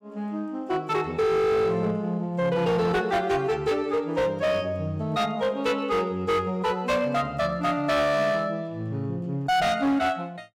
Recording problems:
distortion; hard clipping, signal-to-distortion ratio 10 dB

